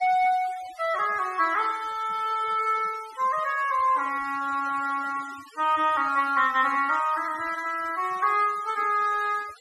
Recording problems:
denoising artefacts; signal-to-artefact ratio 20 dB

